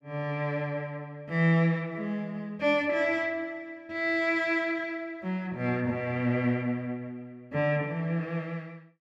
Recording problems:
none

